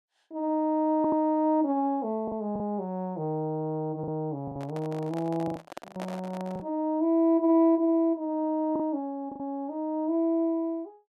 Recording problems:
packet loss; 5% of the sound replaced, filled with the last packet
audio stuttering; at 1 s
microphone handling noise; from 4.5 to 6.5 s; peak -6 dB vs average level

